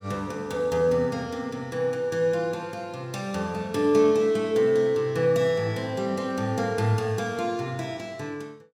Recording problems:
none

